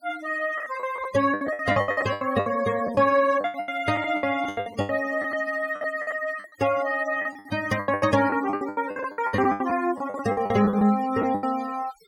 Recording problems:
denoising artefacts; signal-to-artefact ratio 17 dB
lost packets; 20% of the sound replaced, filled with the last packet

